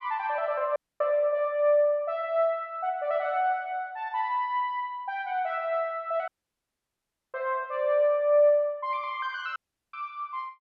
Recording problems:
audio cutting out; at 1 s, at 6.5 s for 1 s and at 9.5 s

